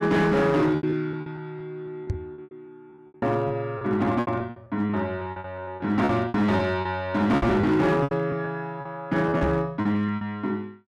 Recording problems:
distorted audio; hard clipping, signal-to-distortion ratio 11 dB
lost packets; 14% of the sound replaced, filled with repeated pitch periods
microphone bump; at 2 s, at 7.5 s and at 9.5 s; peak +1 dB vs average level

